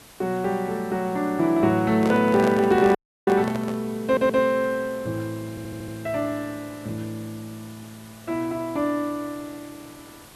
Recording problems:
background hiss; slope -3 dB per octave, SNR 22 dB
microphone handling noise; from 2 to 4 s; peak -1 dB vs average level
audio cutting out; at 3 s
stutter; at 4 s and at 5.5 s

